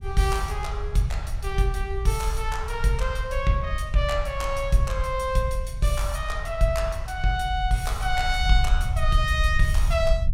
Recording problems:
rumble; below 68 Hz, SNR 5 dB

